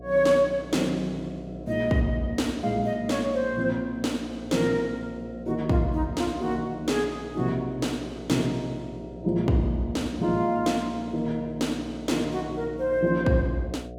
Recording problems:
electrical hum; 60 Hz, harmonics up to 720 Hz, SNR 16 dB

